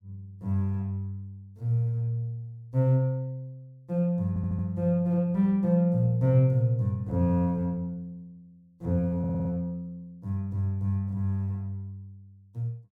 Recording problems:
stutter; at 4.5 s and at 9 s

